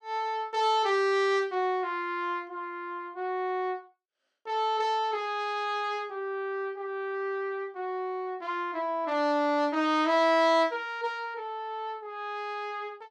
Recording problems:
none

